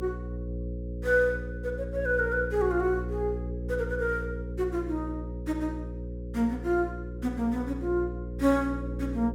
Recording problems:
electrical hum; 60 Hz, harmonics up to 540 Hz, SNR 7 dB

